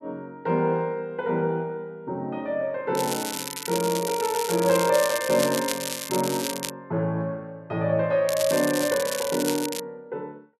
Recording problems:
crackling; from 3 to 6.5 s and from 8.5 to 10 s; loose cable, SNR 6 dB

